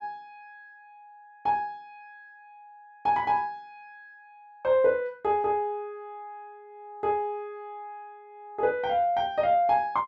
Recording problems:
none

